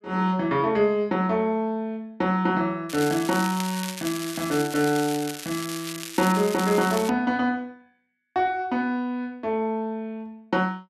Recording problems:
crackling; from 3 to 7 s; loose cable, SNR 9 dB

